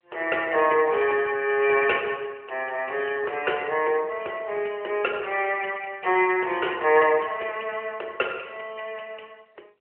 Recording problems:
telephone audio; 320 Hz to 3.1 kHz, AMR-NB

